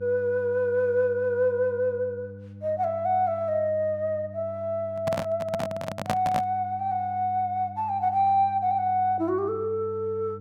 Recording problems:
hum; 50 Hz, harmonics up to 500 Hz, SNR 17 dB
handling noise; from 5 to 6.5 s; peak +3 dB vs average level

